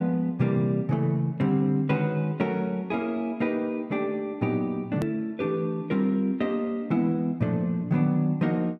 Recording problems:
hard cut with a click; at 5 s

